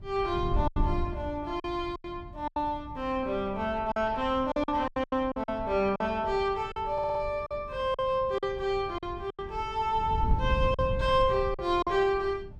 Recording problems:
wind on the microphone; below 100 Hz, SNR 9 dB
packet loss; 9% of the sound replaced, filled with silence
audio stuttering; at 7 s

